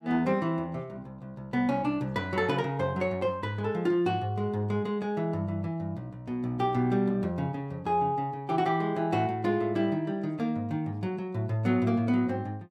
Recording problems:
none

